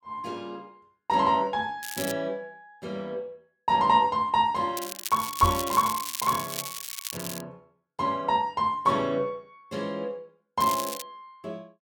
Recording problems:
crackling; at 2 s, from 5 to 7.5 s and at 11 s; loose cable, SNR 8 dB
microphone thump; at 5.5 s; peak +1 dB vs average level

